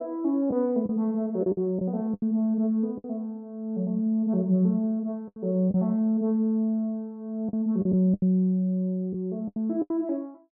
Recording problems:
lost packets; 7% of the sound replaced, filled with the last packet

